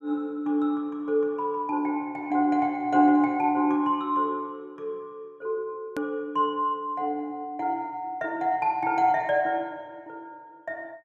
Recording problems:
hard cut with a click; at 6 s

